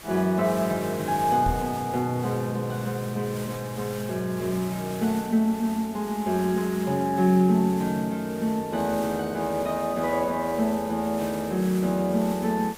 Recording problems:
background hiss; slope -2 dB per octave, SNR 16 dB
microphone bump; at 1.5 s; peak -1 dB vs average level

